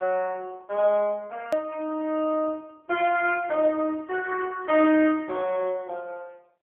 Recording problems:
phone line; 240 Hz to 3.3 kHz, AMR-NB
edit click; at 1.5 s

